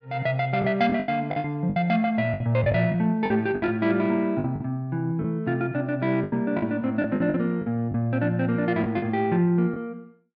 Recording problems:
packet loss; 10% of the sound replaced, filled with the last packet

